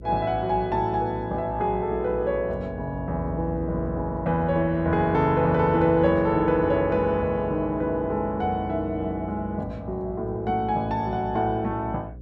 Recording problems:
hum; 60 Hz, harmonics up to 540 Hz, SNR 16 dB

